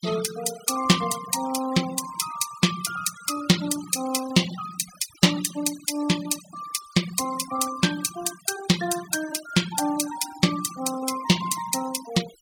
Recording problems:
denoising artefacts; signal-to-artefact ratio 13 dB

